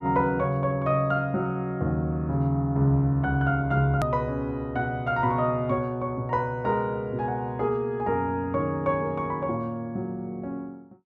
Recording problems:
hard cut with a click; at 4 s

